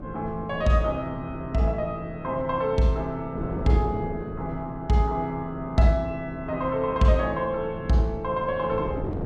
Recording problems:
wind on the microphone; below 370 Hz, SNR 11 dB

